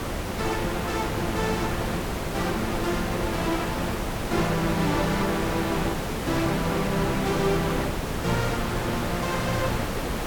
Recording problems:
background hiss; slope -6 dB per octave, SNR 1 dB

